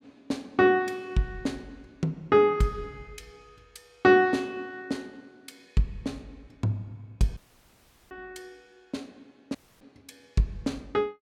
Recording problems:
dropout; at 7.5 s for 0.5 s and at 9.5 s

